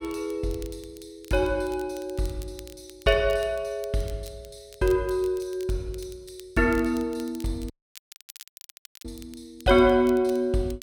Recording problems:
crackle; vinyl, SNR 23 dB
dropout; at 7.5 s for 1.5 s

